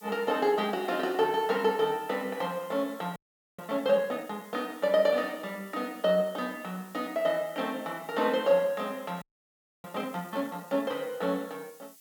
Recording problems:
hiss; SNR 23 dB
frozen audio; at 3 s and at 9 s for 0.5 s

